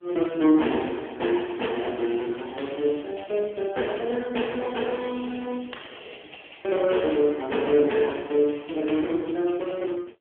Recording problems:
telephone audio; 260 Hz to 3.4 kHz, AMR-NB
crackle; from 2 to 3 s, at 4 s and from 5.5 to 6.5 s; loose cable, SNR 27 dB

